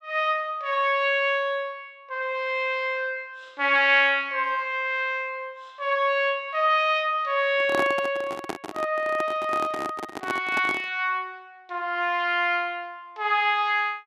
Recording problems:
handling noise; from 7.5 to 11 s; peak 0 dB vs average level

